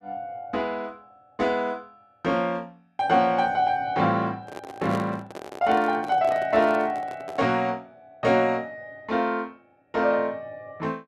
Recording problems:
microphone handling noise; from 4.5 to 7.5 s; peak -5 dB vs average level

